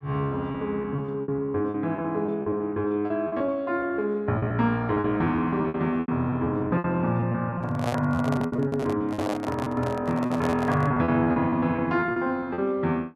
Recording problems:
lost packets; 16% of the sound replaced, filled with repeated pitch periods
microphone handling noise; from 7.5 to 11 s; peak +1 dB vs average level

